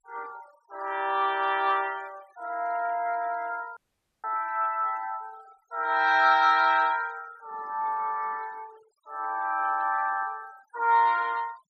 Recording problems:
noise reduction artefacts; signal-to-artefact ratio 25 dB
dropout; at 4 s

